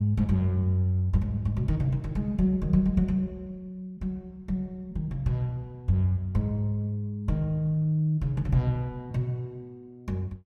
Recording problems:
none

